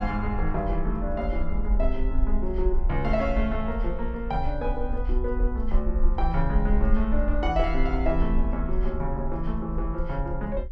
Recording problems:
rumble; below 50 Hz, strongest tone 20 Hz, SNR 0 dB

